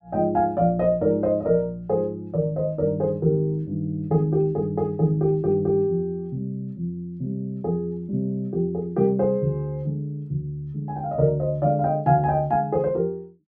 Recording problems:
none

